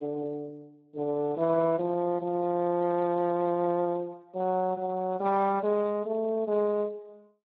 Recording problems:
codec artefacts; Speex, log-spectral distance 2 dB

